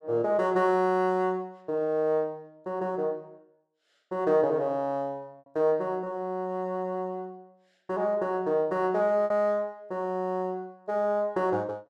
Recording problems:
lost packets; 0.8% of the sound replaced, filled with repeated pitch periods

